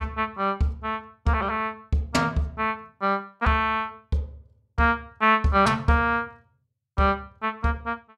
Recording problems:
none

